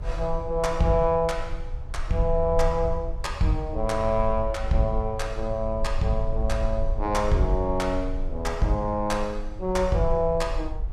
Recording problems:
rumble; below 54 Hz, SNR 7 dB

